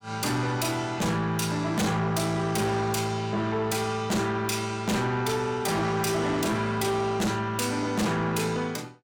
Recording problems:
distortion; soft clipping, signal-to-distortion ratio 6 dB

